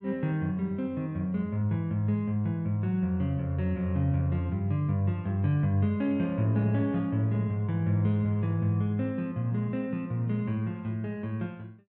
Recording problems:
none

